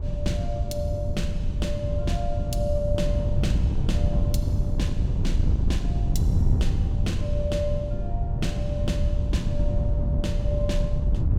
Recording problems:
wind on the microphone; below 110 Hz, SNR -7 dB

